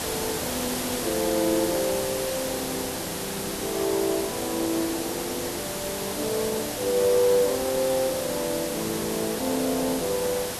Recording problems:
background hiss; slope -3 dB per octave, SNR 3 dB

